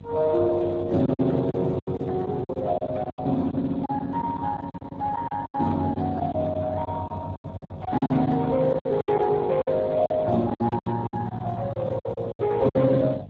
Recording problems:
lossy compression; Speex, log-spectral distance 3 dB
hum; 50 Hz, harmonics up to 450 Hz, SNR 19 dB
packet loss; 14% of the sound replaced, filled with silence

